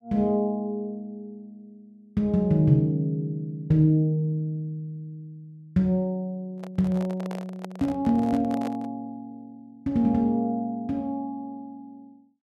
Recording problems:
microphone handling noise; from 6.5 to 9 s; peak -7 dB vs average level

